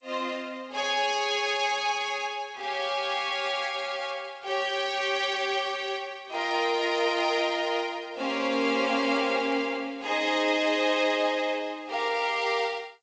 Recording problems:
codec artefacts; MP3, then G.722, log-spectral distance 3 dB, nothing above 7.6 kHz

